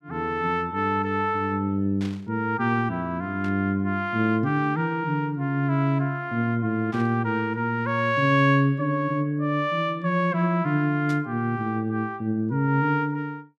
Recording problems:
static burst; 4 times, first at 2 s; peak -13 dB vs average level

